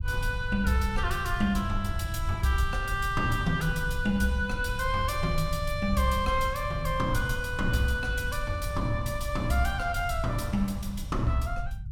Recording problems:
low-frequency rumble; below 84 Hz, SNR 6 dB

